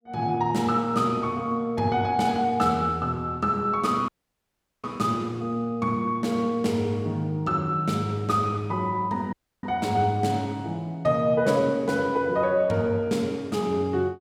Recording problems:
dropout; at 4 s for 1 s and at 9.5 s

